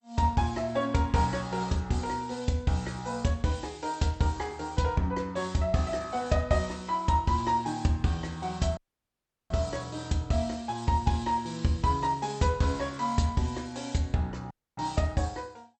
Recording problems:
lossy compression; MP2, log-spectral distance 3 dB, nothing above 8.2 kHz
dropout; at 9 s for 0.5 s and at 15 s

